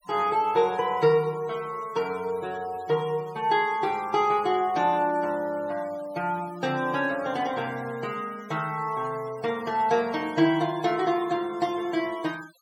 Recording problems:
noise reduction artefacts; signal-to-artefact ratio 22 dB

